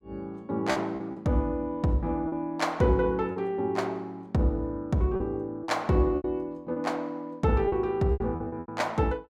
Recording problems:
lost packets; 7% of the sound replaced, filled with repeated pitch periods

